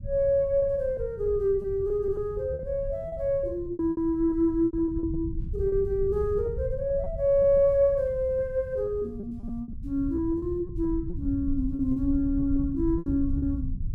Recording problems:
rumble; below 96 Hz, SNR 10 dB
lost packets; 10% of the sound replaced, filled with repeated pitch periods

